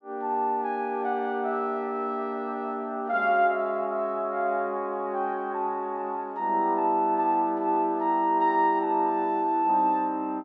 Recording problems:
none

